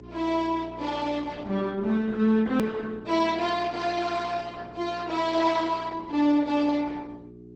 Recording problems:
codec artefacts; Opus, log-spectral distance 3 dB, nothing above 18.9 kHz
hum; 60 Hz, harmonics up to 480 Hz, SNR 18 dB
edit click; at 2.5 s

